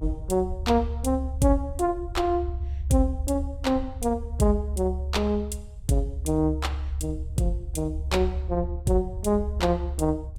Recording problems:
low-frequency rumble; below 72 Hz, strongest tone 70 Hz, SNR 6 dB

